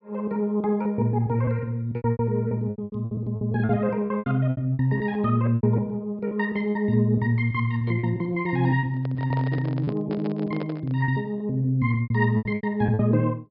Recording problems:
treble cut off; nothing above 5.5 kHz
packet loss; 13% of the sound replaced, filled with repeated pitch periods
handling noise; from 9 to 11 s; peak -6 dB vs average level

